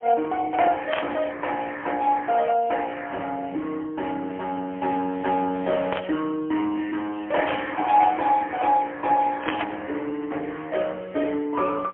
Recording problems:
telephone audio; 240 Hz to 3.4 kHz, AMR-NB, then MP3
static burst; 4 times, first at 1 s; peak +1 dB vs average level

